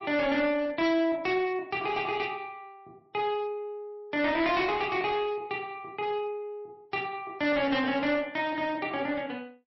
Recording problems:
codec artefacts; MP3, log-spectral distance 2 dB, nothing above 5.7 kHz
distortion; hard clipping, uneven, signal-to-distortion ratio 11 dB

